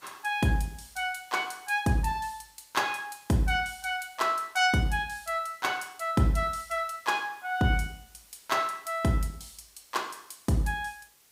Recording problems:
background hiss; slope 0 dB per octave, SNR 27 dB

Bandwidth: 15.5 kHz